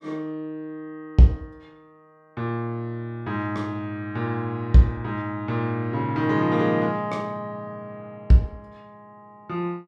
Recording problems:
none

